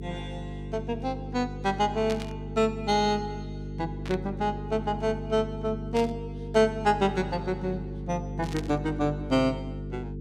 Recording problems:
mains hum; 50 Hz, harmonics up to 450 Hz, SNR 8 dB
static burst; 4 times, first at 2 s; peak -5 dB vs average level

